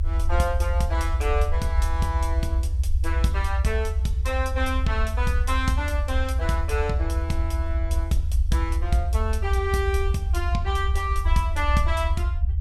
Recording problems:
rumble; below 78 Hz, SNR -3 dB

